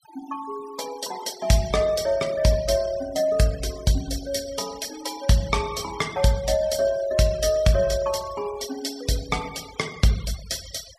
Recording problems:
noise reduction artefacts; signal-to-artefact ratio 17 dB

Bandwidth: 15 kHz